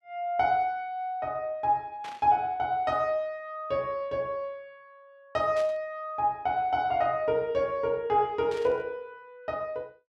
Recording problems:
static burst; at 2 s, at 5.5 s and at 8.5 s; peak -11 dB vs average level

